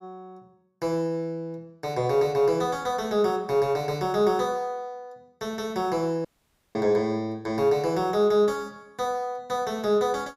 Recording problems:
dropout; at 6.5 s for 0.5 s

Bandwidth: 15.5 kHz